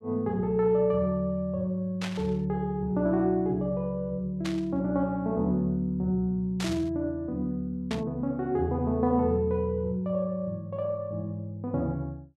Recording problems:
static burst; 4 times, first at 2 s; peak -4 dB vs average level

